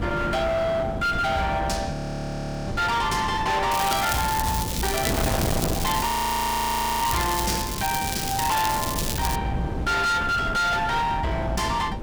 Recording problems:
distorted audio; hard clipping, uneven, signal-to-distortion ratio 7 dB
wind on the microphone; below 580 Hz, SNR 6 dB
frozen audio; at 2 s for 0.5 s and at 6 s for 1 s
crackling; from 3.5 to 9.5 s; loose cable, SNR 5 dB

